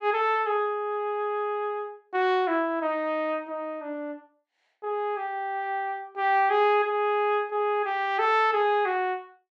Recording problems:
none

